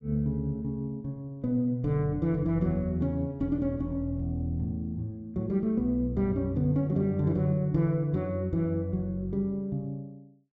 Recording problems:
low-pass filter; nothing above 7.9 kHz

